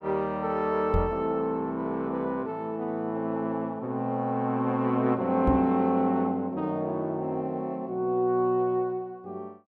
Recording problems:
knock on the microphone; at 1 s and at 5.5 s; peak +5 dB vs average level

